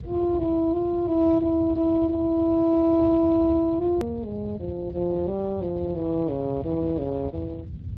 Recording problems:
lossy compression; Speex, log-spectral distance 2 dB, nothing above 13.1 kHz
low-frequency rumble; below 140 Hz, SNR 13 dB
edit click; at 4 s

